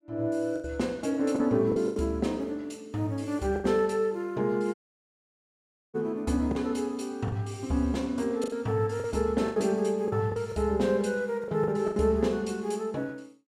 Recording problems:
packet loss; 7% of the sound replaced, filled with the last packet
dropout; at 4.5 s for 1 s

